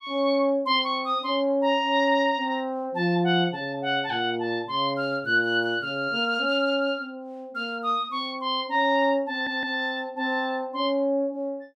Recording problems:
stutter; at 9.5 s

